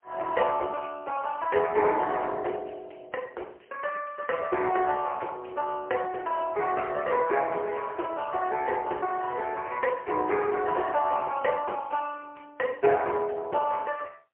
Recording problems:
phone line; 320 Hz to 3.4 kHz, AMR-NB, then MP3

